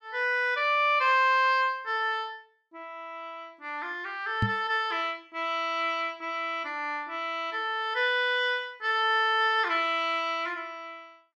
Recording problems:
knock on the microphone; at 4.5 s; peak +3 dB vs average level

